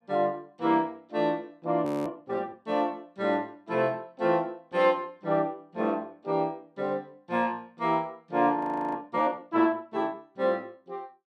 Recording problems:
audio freezing; at 2 s and at 8.5 s

